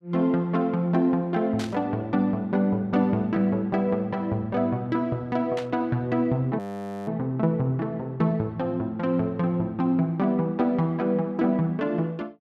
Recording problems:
burst of static; at 1.5 s and at 5.5 s; peak -7 dB vs average level
audio freezing; at 6.5 s

